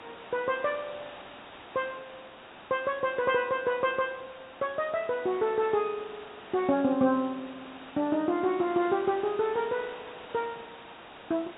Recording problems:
treble cut off; nothing above 4 kHz
background hiss; SNR 17 dB

